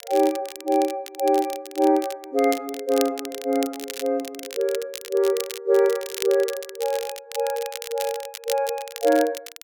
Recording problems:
crackle; vinyl, SNR 12 dB

